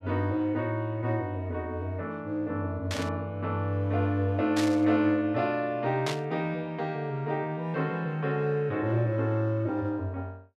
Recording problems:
burst of static; at 3 s, at 4.5 s and at 6 s; peak 0 dB vs average level

